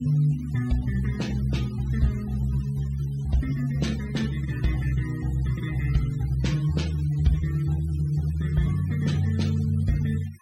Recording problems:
denoising artefacts; signal-to-artefact ratio 20 dB

